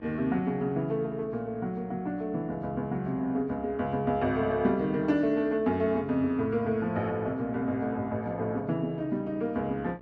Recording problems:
electrical hum; 60 Hz, harmonics up to 1.9 kHz, SNR 23 dB

